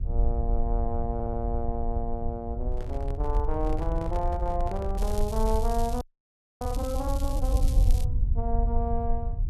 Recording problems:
rumble; below 62 Hz, SNR -2 dB
audio stuttering; at 1 s
handling noise; from 2.5 to 5.5 s; peak -4 dB vs average level
crackling; from 5 to 8 s; loose cable, SNR 12 dB
audio freezing; at 6 s for 0.5 s

